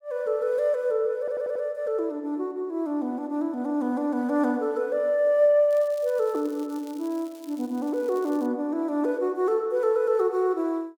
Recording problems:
stutter; at 1 s
crackle; from 5.5 to 8.5 s; loose cable, SNR 26 dB

